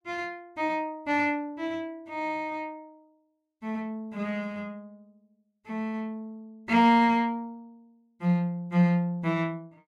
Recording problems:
none

